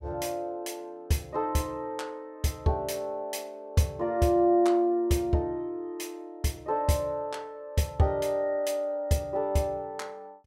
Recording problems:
none

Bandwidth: 16.5 kHz